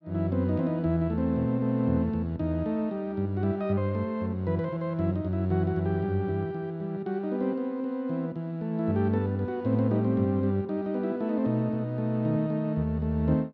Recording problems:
none

